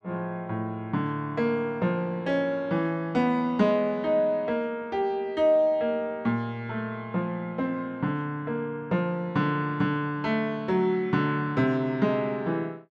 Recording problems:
none

